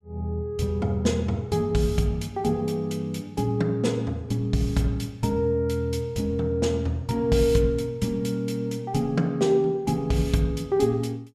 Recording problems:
none

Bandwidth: 14.5 kHz